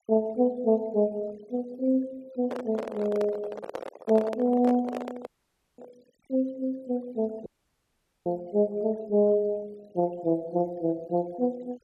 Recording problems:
denoising artefacts; signal-to-artefact ratio 25 dB
handling noise; from 2.5 to 6 s; peak -3 dB vs average level
dropout; at 5.5 s for 0.5 s and at 7.5 s for 1 s

